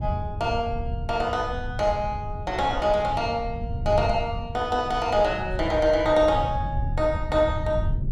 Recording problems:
rumble; below 120 Hz, SNR 8 dB

